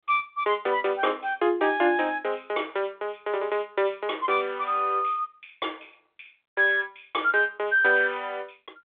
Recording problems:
telephone audio; 300 Hz to 3.6 kHz, G.726

